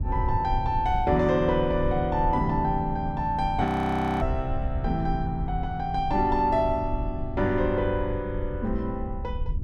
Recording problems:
rumble; below 90 Hz, SNR 7 dB
frozen audio; at 3.5 s for 0.5 s

